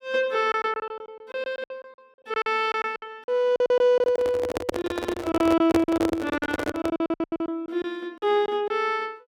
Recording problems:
lost packets; 17% of the sound replaced, filled with silence
handling noise; from 4 to 7 s; peak +4 dB vs average level

